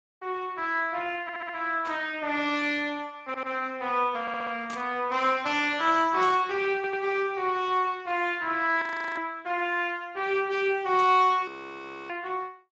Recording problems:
lossy codec; Speex, log-spectral distance 4 dB
audio stuttering; 4 times, first at 1 s
burst of static; 4 times, first at 2 s; peak -10 dB vs average level
audio freezing; at 9 s and at 11 s for 0.5 s

